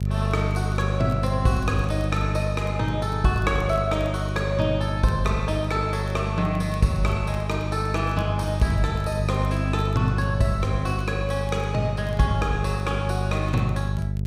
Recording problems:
hum; 50 Hz, harmonics up to 400 Hz, SNR 1 dB
crackle; vinyl, SNR 29 dB

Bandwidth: 15.5 kHz